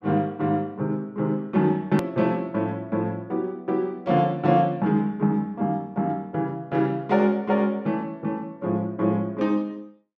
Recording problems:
click at an edit; at 2 s

